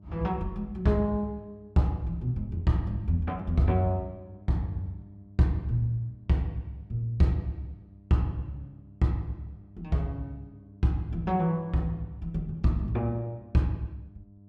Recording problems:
hum; 50 Hz, harmonics up to 700 Hz, SNR 22 dB

